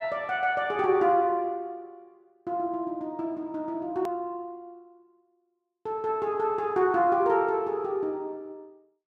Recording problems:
edit click; at 4 s

